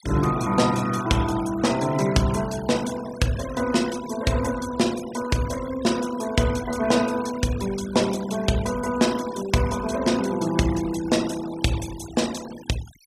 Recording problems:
denoising artefacts; signal-to-artefact ratio 15 dB

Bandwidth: 15.5 kHz